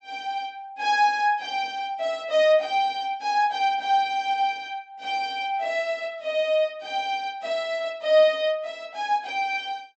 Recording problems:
low-pass filter; nothing above 7.9 kHz

